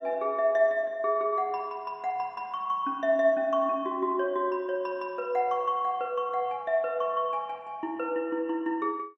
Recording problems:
none

